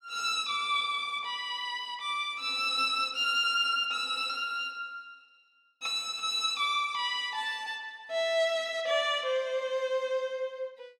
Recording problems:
none

